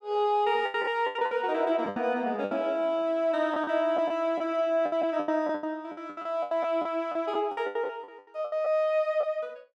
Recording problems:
packet loss; 15% of the sound replaced, filled with the last packet

